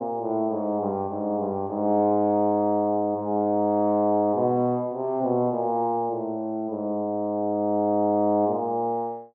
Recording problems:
none

